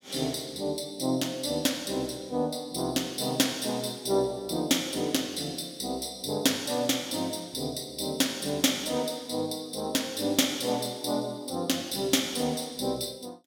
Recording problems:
none

